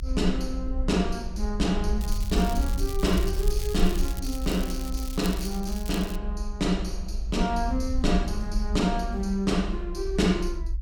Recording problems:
rumble; below 54 Hz, SNR 4 dB
crackle; from 2 to 6 s; loose cable, SNR 13 dB

